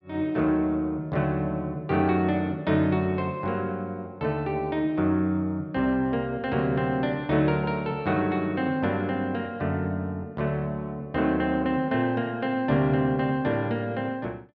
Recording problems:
none

